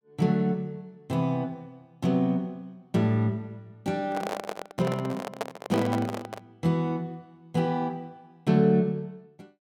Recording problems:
handling noise; from 4 to 6.5 s; peak +1 dB vs average level

